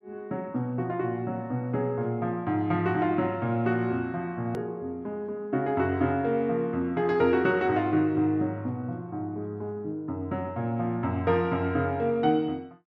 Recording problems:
click at an edit; at 4.5 s

